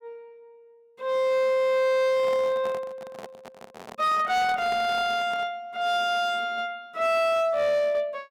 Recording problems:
distortion; hard clipping, signal-to-distortion ratio 11 dB
microphone handling noise; from 2 to 5.5 s; peak -11 dB vs average level

